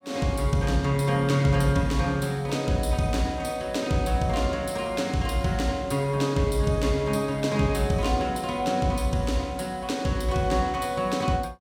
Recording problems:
none

